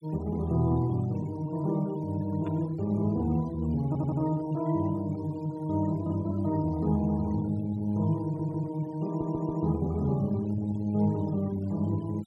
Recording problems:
denoising artefacts; signal-to-artefact ratio 22 dB
static burst; at 2.5 s; peak -19 dB vs average level
audio stuttering; at 4 s, at 8 s and at 9 s

